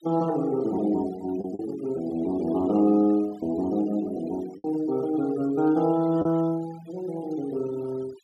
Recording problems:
denoising artefacts; signal-to-artefact ratio 21 dB
packet loss; 2% of the sound replaced, filled with the last packet

